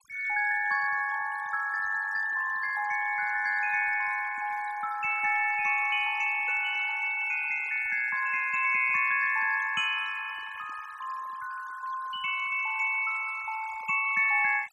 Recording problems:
noise reduction artefacts; signal-to-artefact ratio 16 dB

